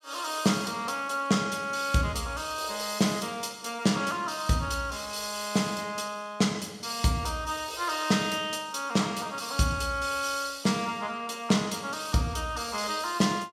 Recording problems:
none

